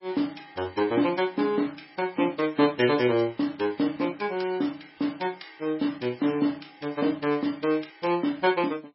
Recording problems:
codec artefacts; MP3, log-spectral distance 4 dB, nothing above 5.3 kHz

